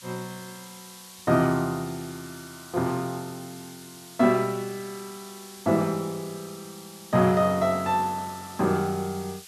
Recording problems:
hiss; slope +4 dB per octave, SNR 18 dB

